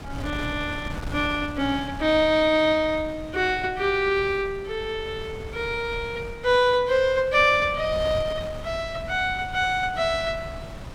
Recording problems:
wind on the microphone; below 440 Hz, SNR 14 dB

